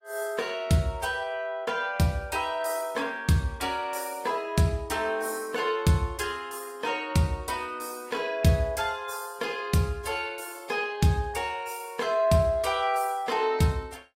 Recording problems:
codec artefacts; AAC, log-spectral distance 3 dB, nothing above 15.5 kHz

